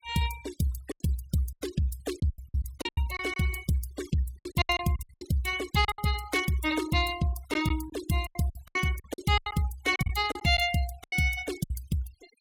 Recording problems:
denoising artefacts; signal-to-artefact ratio 15 dB
packet loss; 13% of the sound replaced, filled with silence

